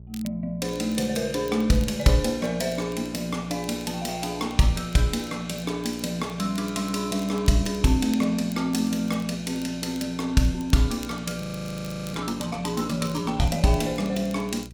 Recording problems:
hum; 60 Hz, harmonics up to 420 Hz, SNR 20 dB
crackle; vinyl, SNR 23 dB
frozen audio; at 11 s for 0.5 s

